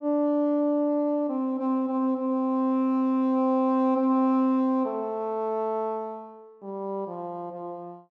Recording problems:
none

